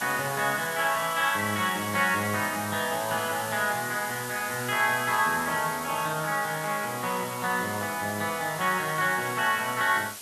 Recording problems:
hiss; SNR 10 dB

